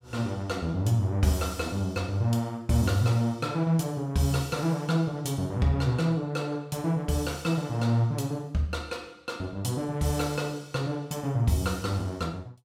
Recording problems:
none

